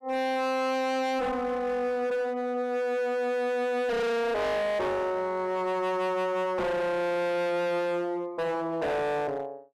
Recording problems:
distortion; hard clipping, signal-to-distortion ratio 6 dB

